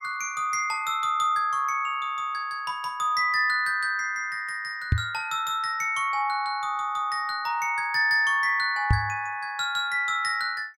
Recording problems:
knock on the microphone; at 5 s and at 9 s; peak +6 dB vs average level

